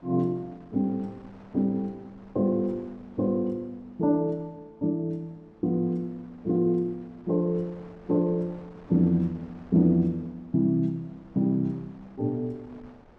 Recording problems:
wind on the microphone; below 880 Hz, SNR 26 dB

